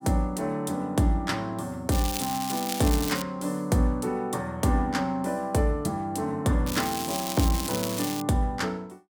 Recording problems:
crackle; from 2 to 3 s and from 6.5 to 8 s; loose cable, SNR 6 dB

